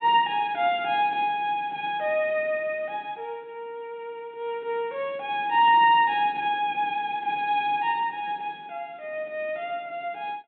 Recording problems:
treble cut off; nothing above 4 kHz

